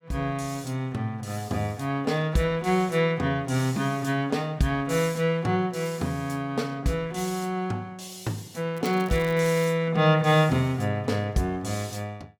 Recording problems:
crackle; at 9 s; loose cable, SNR 21 dB

